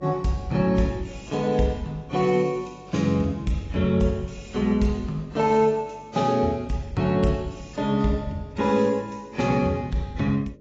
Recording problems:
codec artefacts; AAC, log-spectral distance 3 dB, nothing above 7.3 kHz
mains hum; 50 Hz, harmonics up to 600 Hz, SNR 26 dB

